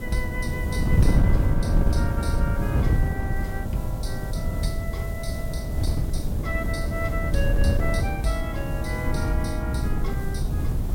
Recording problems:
hiss; slope +2 dB per octave, SNR 15 dB
wind noise; below 130 Hz, SNR -6 dB

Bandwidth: 16.5 kHz